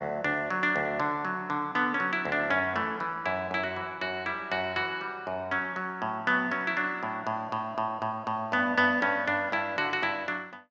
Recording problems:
none

